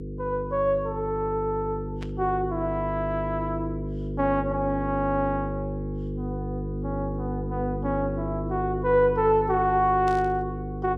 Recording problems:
hum; 50 Hz, harmonics up to 500 Hz, SNR 6 dB
static burst; at 2 s and at 10 s; peak -12 dB vs average level

